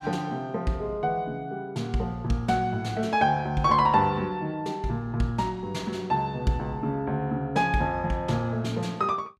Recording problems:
none

